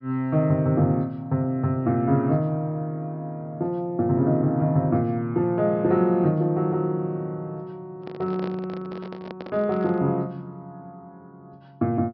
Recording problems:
low-pass filter; nothing above 5.5 kHz
microphone handling noise; from 8 to 10 s; peak -8 dB vs average level

